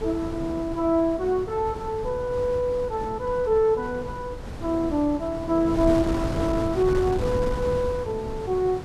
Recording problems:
wind on the microphone; below 360 Hz, SNR 9 dB

